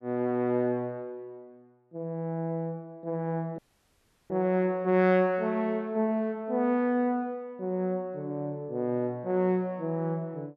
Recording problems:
dropout; at 3.5 s for 0.5 s

